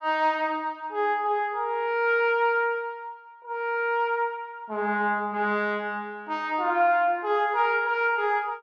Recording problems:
none

